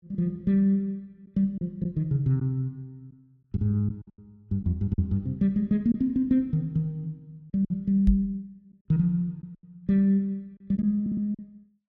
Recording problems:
lost packets; 4% of the sound replaced, filled with silence
knock on the microphone; at 8 s; peak +6 dB vs average level
stutter; at 11 s

